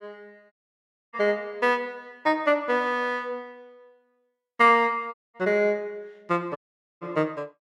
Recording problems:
dropout; at 0.5 s for 0.5 s, at 5 s and at 6.5 s

